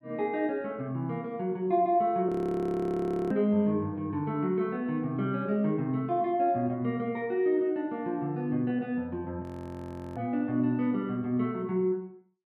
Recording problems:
frozen audio; at 2.5 s for 1 s and at 9.5 s for 0.5 s

